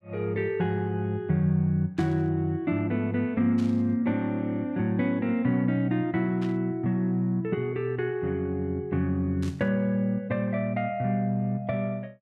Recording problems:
burst of static; 4 times, first at 2 s; peak -13 dB vs average level

